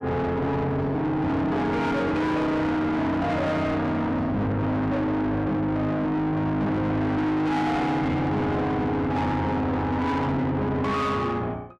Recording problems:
distortion; soft clipping, signal-to-distortion ratio 7 dB

